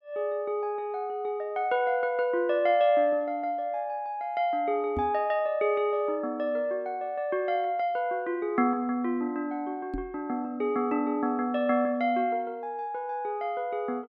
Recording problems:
knock on the microphone; at 5 s and at 10 s; peak -2 dB vs average level

